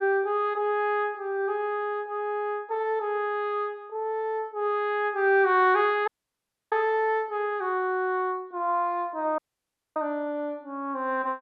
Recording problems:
dropout; at 6 s for 0.5 s and at 9.5 s for 0.5 s

